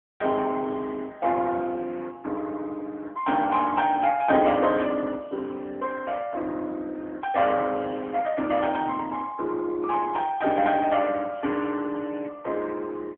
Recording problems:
phone line; 220 Hz to 3.5 kHz, AMR-NB

